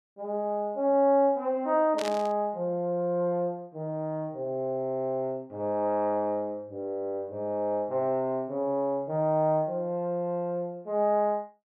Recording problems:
burst of static; at 2 s; peak -4 dB vs average level

